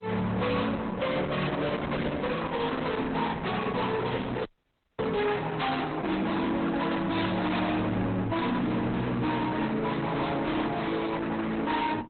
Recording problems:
lossy compression; Opus, log-spectral distance 5 dB, nothing above 4 kHz
distortion; soft clipping, signal-to-distortion ratio 7 dB
frozen audio; at 4.5 s for 0.5 s

